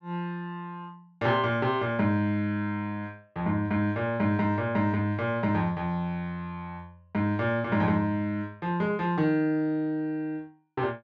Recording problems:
none

